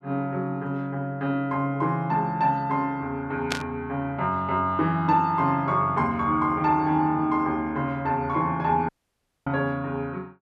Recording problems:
burst of static; at 3.5 s; peak +2 dB vs average level
audio cutting out; at 9 s for 0.5 s

